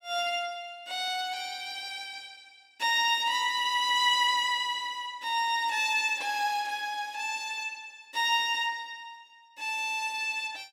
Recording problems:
none

